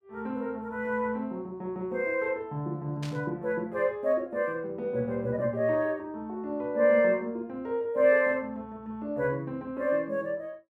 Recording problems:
static burst; at 3 s; peak -10 dB vs average level

